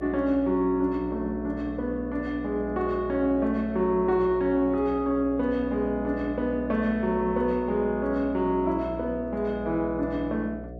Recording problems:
mains hum; 60 Hz, harmonics up to 720 Hz, SNR 13 dB

